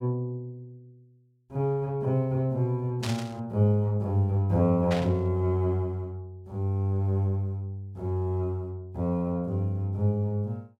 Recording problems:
burst of static; at 3 s and at 5 s; peak -3 dB vs average level

